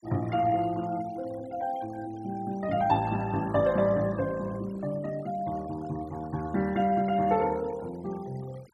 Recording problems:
noise reduction artefacts; signal-to-artefact ratio 21 dB

